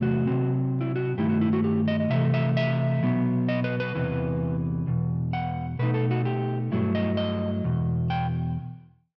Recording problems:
none

